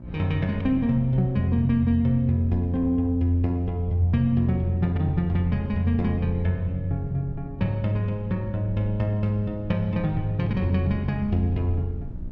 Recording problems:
hum; 60 Hz, harmonics up to 660 Hz, SNR 20 dB
wind on the microphone; below 92 Hz, SNR 16 dB

